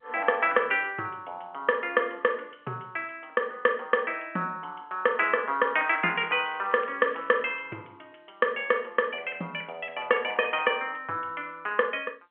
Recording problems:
phone line; 240 Hz to 3.2 kHz, G.711
crackling; from 6 to 7.5 s; loose cable, SNR 27 dB

